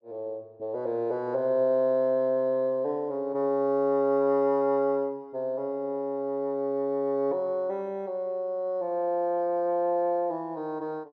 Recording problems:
none

